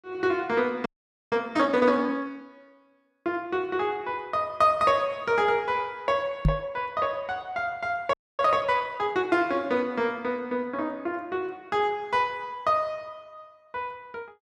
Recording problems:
audio freezing; at 1 s and at 8 s
microphone thump; at 6.5 s; peak +7 dB vs average level

